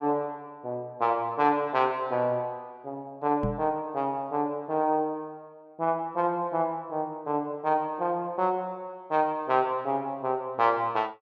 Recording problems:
microphone bump; at 3.5 s; peak +1 dB vs average level

